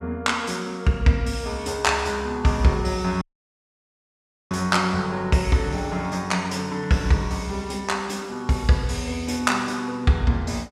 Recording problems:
dropout; at 3 s for 1.5 s

